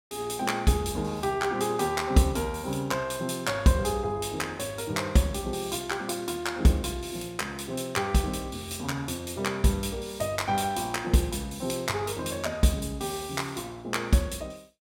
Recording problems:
none

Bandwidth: 17 kHz